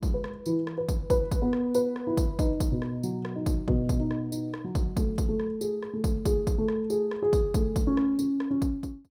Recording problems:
none

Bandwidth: 16.5 kHz